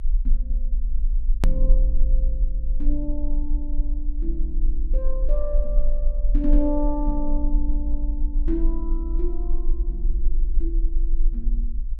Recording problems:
low-frequency rumble; below 36 Hz, strongest tone 20 Hz, SNR -6 dB
click at an edit; at 1.5 s

